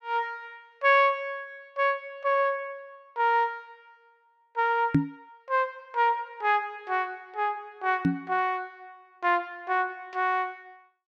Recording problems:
microphone thump; at 5 s and at 8 s; peak +9 dB vs average level

